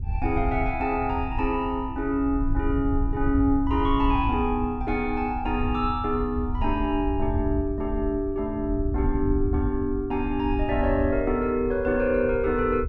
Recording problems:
wind noise; below 84 Hz, SNR 6 dB

